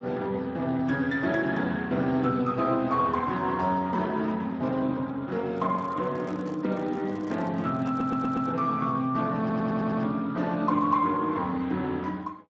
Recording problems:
lossy codec; Speex, log-spectral distance 3 dB
handling noise; from 5.5 to 8.5 s; peak -12 dB vs average level
stutter; at 8 s and at 9.5 s

